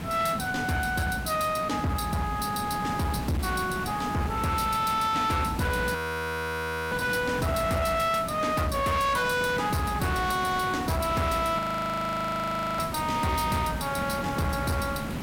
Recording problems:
distorted audio; hard clipping, uneven, signal-to-distortion ratio 7 dB
background hiss; slope -5 dB per octave, SNR 8 dB
audio freezing; at 6 s for 1 s and at 12 s for 1 s

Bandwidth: 16.5 kHz